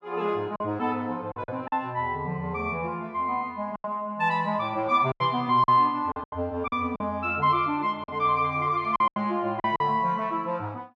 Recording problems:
packet loss; 7% of the sound replaced, filled with silence

